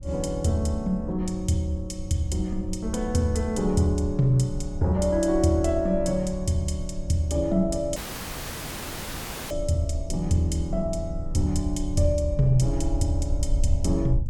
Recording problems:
low-frequency rumble; below 66 Hz, SNR 9 dB
dropout; at 8 s for 1.5 s

